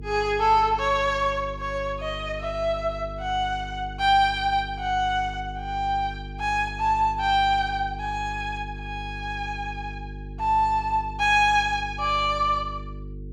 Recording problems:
hum; 50 Hz, harmonics up to 450 Hz, SNR 13 dB

